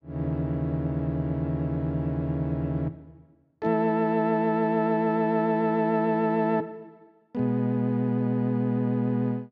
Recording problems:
none

